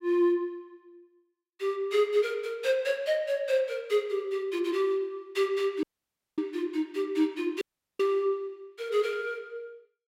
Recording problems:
dropout; at 6 s for 0.5 s and at 7.5 s

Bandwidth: 16 kHz